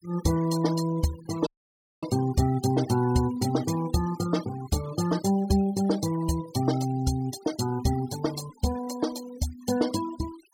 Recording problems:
denoising artefacts; signal-to-artefact ratio 15 dB
dropout; at 1.5 s for 0.5 s

